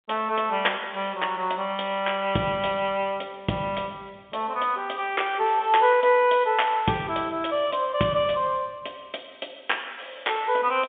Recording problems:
phone line; 170 Hz to 3.6 kHz, G.711

